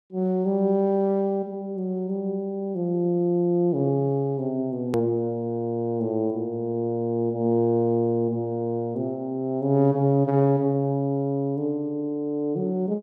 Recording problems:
hard cut with a click; at 5 s

